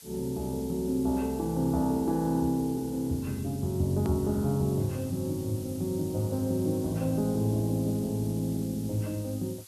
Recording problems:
background hiss; slope +2 dB per octave, SNR 18 dB
hard cut with a click; at 4 s

